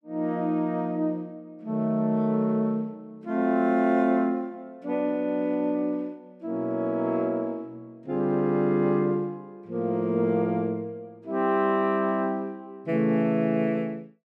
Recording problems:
none

